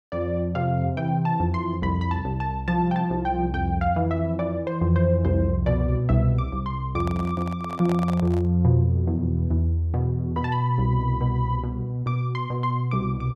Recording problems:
microphone handling noise; from 7 to 8.5 s; peak -6 dB vs average level

